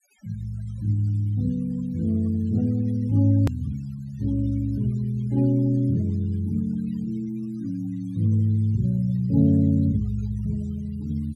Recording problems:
noise reduction artefacts; signal-to-artefact ratio 26 dB
edit click; at 3.5 s

